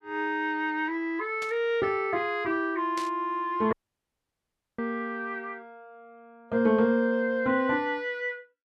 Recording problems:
burst of static; at 1.5 s and at 3 s; peak -6 dB vs average level
dropout; at 3.5 s for 1 s

